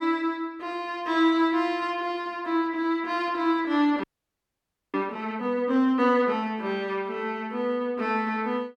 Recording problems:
frozen audio; at 4 s for 1 s

